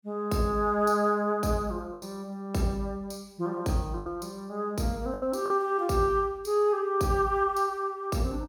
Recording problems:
packet loss; 3% of the sound replaced, filled with the last packet

